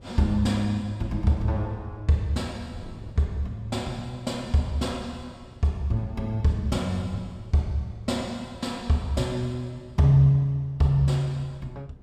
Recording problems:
wind on the microphone; below 180 Hz, SNR 23 dB

